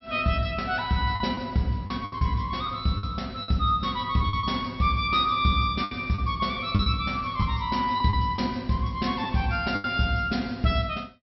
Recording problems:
treble missing; nothing above 5.6 kHz
packet loss; 7% of the sound replaced, filled with the last packet

